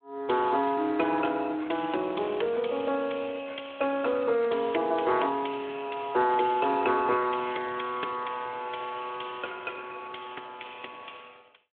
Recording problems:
telephone audio; 320 Hz to 3.4 kHz, Speex

